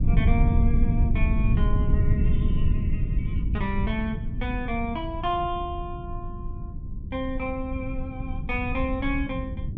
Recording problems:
rumble; below 110 Hz, SNR -3 dB

